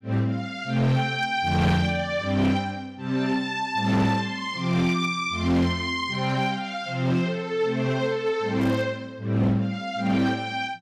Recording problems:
distortion; hard clipping, signal-to-distortion ratio 12 dB
crackle; at 8.5 s; loose cable, SNR 27 dB

